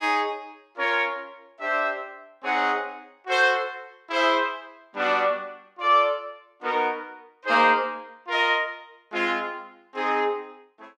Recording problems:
none

